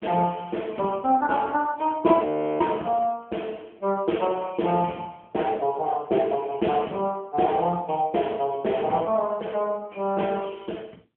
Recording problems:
telephone audio; 220 Hz to 3.3 kHz, AMR-NB
frozen audio; at 2.5 s

